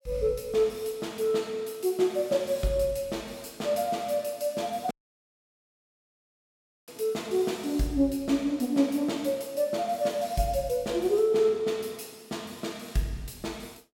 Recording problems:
dropout; at 5 s for 2 s

